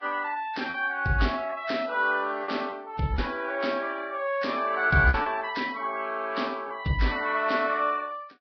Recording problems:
codec artefacts; Vorbis, log-spectral distance 3 dB, nothing above 5.2 kHz
lost packets; 4% of the sound replaced, filled with repeated pitch periods

